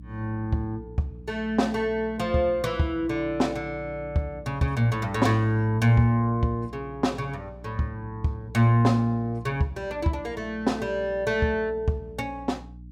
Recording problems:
electrical hum; 60 Hz, harmonics up to 300 Hz, SNR 18 dB

